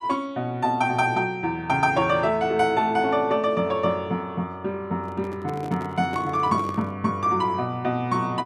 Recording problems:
microphone handling noise; from 5 to 7 s; peak -7 dB vs average level

